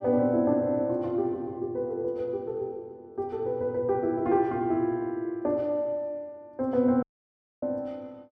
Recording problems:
dropout; at 7 s for 0.5 s

